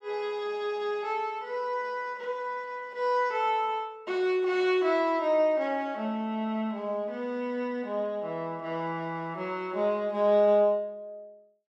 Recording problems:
none

